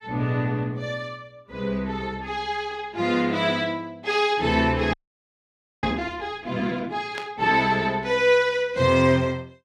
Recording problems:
audio freezing; at 5 s for 1 s
static burst; at 7 s; peak -6 dB vs average level

